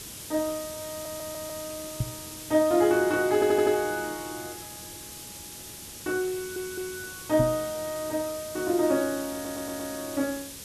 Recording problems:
background hiss; SNR 11 dB
stutter; 4 times, first at 1 s
knock on the microphone; at 2 s and at 7.5 s; peak +3 dB vs average level

